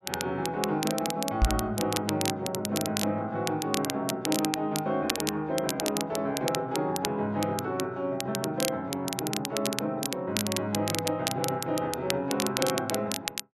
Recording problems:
crackle; vinyl, SNR 4 dB
microphone bump; at 1.5 s; peak +9 dB vs average level

